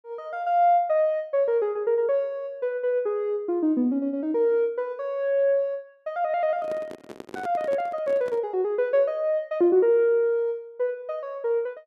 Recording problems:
microphone handling noise; from 6.5 to 8.5 s; peak -8 dB vs average level

